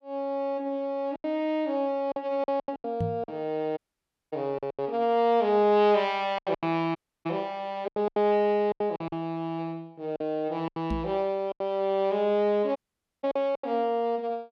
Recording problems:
lost packets; 10% of the sound replaced, filled with silence
knock on the microphone; at 3 s and at 11 s; peak +1 dB vs average level
audio cutting out; at 4 s for 0.5 s, at 7 s and at 13 s

